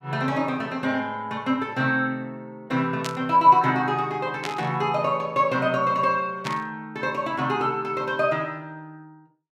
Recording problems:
static burst; at 3 s, at 4.5 s and at 6.5 s; peak -3 dB vs average level

